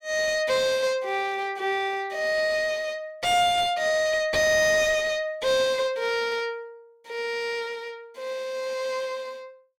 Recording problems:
distortion; soft clipping, signal-to-distortion ratio 8 dB

